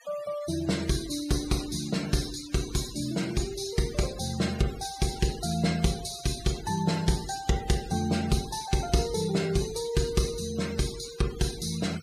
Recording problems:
noise reduction artefacts; signal-to-artefact ratio 15 dB

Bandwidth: 15.5 kHz